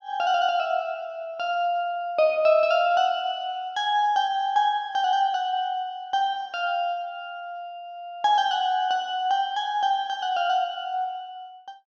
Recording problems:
none

